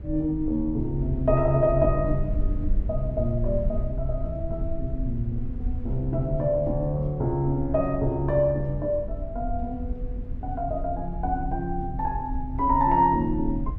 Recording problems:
low-frequency rumble; below 64 Hz, SNR 7 dB

